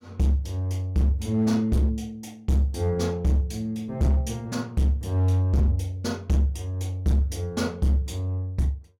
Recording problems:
distortion; hard clipping, signal-to-distortion ratio 10 dB

